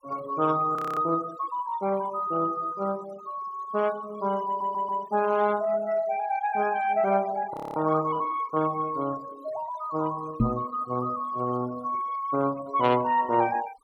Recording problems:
denoising artefacts; signal-to-artefact ratio 19 dB
audio freezing; at 1 s and at 7.5 s
stutter; at 4.5 s
microphone bump; at 10 s; peak +7 dB vs average level

